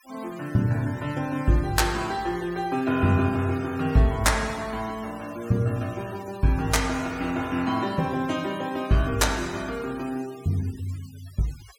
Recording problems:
denoising artefacts; signal-to-artefact ratio 19 dB

